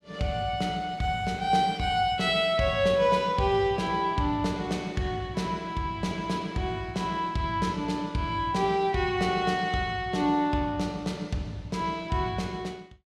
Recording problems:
none

